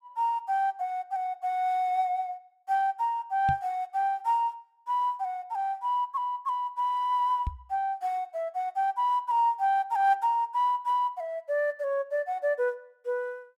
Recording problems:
knock on the microphone; at 3.5 s and at 7.5 s; peak -1 dB vs average level

